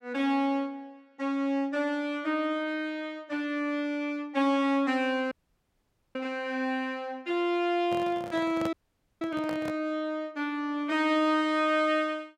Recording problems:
audio cutting out; at 5.5 s for 1 s and at 8.5 s
handling noise; from 8 to 10 s; peak -3 dB vs average level

